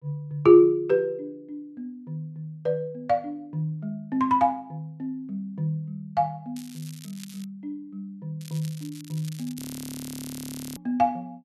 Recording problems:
crackle; at 6.5 s and from 8.5 to 9.5 s; loose cable, SNR 16 dB
frozen audio; at 9.5 s for 1 s

